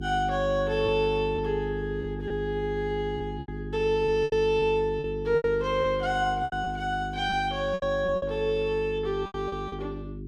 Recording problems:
hum; 50 Hz, harmonics up to 400 Hz, SNR 9 dB
lost packets; 9% of the sound replaced, filled with repeated pitch periods

